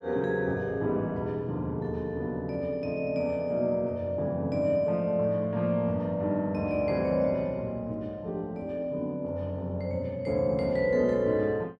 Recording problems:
none

